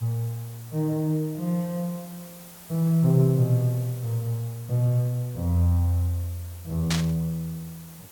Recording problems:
background hiss; slope -2 dB per octave, SNR 20 dB
static burst; at 7 s; peak +2 dB vs average level

